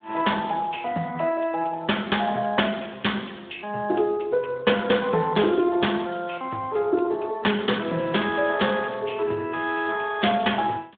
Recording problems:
phone line; 260 Hz to 3.5 kHz, Speex

